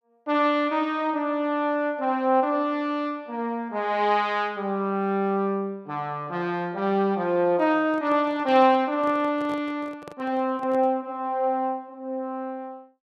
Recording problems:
microphone handling noise; from 7.5 to 11 s; peak -12 dB vs average level

